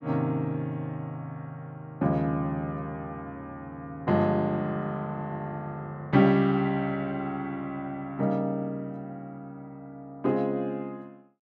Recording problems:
none

